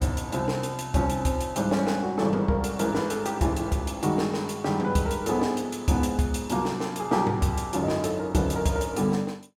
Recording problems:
none

